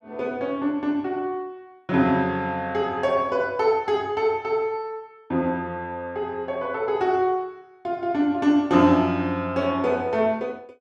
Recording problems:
none

